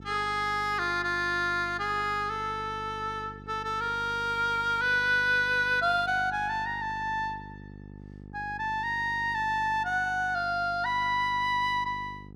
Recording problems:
electrical hum; 50 Hz, harmonics up to 850 Hz, SNR 18 dB

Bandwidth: 14.5 kHz